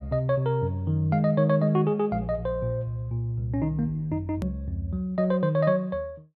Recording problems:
click at an edit; at 4.5 s

